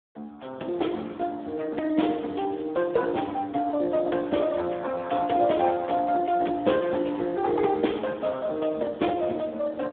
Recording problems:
telephone audio; 220 Hz to 3.6 kHz, Speex

